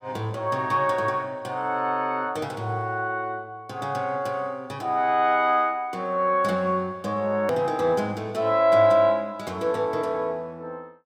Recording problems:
hard cut with a click; at 7.5 s

